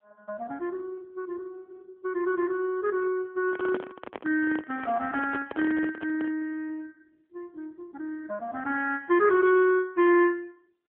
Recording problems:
telephone audio; 320 Hz to 3.3 kHz, AMR-NB
microphone handling noise; from 3.5 to 6.5 s; peak -4 dB vs average level

